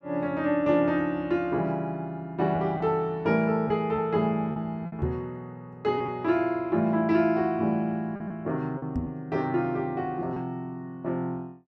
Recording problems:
lost packets; 4% of the sound replaced, filled with repeated pitch periods
microphone bump; at 5 s and at 9 s; peak 0 dB vs average level

